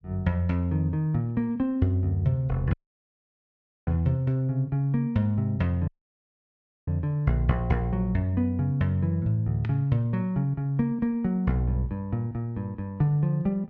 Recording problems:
dropout; at 2.5 s for 1 s and at 6 s for 1 s

